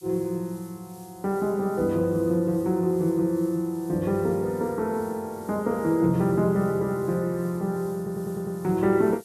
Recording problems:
background hiss; slope +5 dB per octave, SNR 24 dB
audio stuttering; at 8 s

